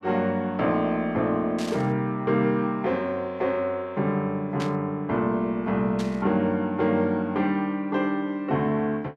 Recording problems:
burst of static; at 1.5 s, at 4.5 s and at 6 s; peak -6 dB vs average level

